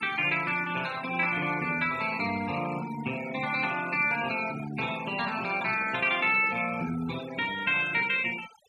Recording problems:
noise reduction artefacts; signal-to-artefact ratio 14 dB

